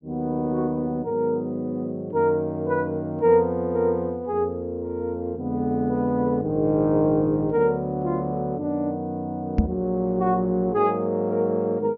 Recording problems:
treble missing; nothing above 7 kHz
knock on the microphone; at 9.5 s; peak +7 dB vs average level

